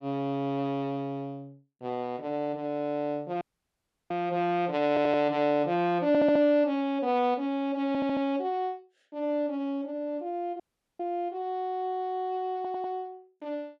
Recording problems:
audio cutting out; at 3.5 s for 0.5 s and at 11 s
stutter; 4 times, first at 5 s

